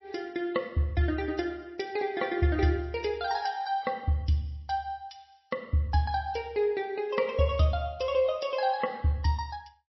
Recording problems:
lossy codec; MP3, log-spectral distance 3 dB, nothing above 5.7 kHz

